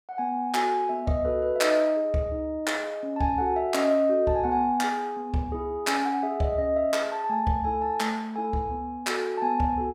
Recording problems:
none

